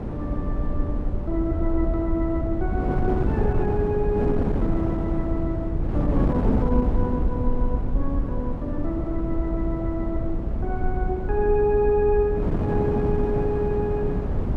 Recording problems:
low-frequency rumble; below 62 Hz, SNR 4 dB
wind noise; below 330 Hz, SNR 1 dB

